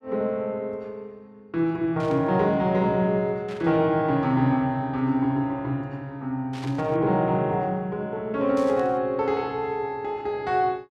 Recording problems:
static burst; 4 times, first at 2 s; peak -13 dB vs average level

